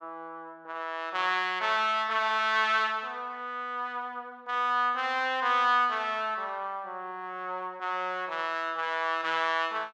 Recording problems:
none

